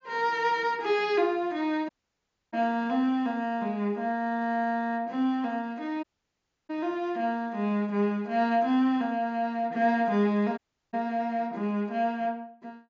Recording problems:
low-pass filter; nothing above 7.3 kHz
dropout; at 2 s for 0.5 s, at 6 s for 0.5 s and at 11 s

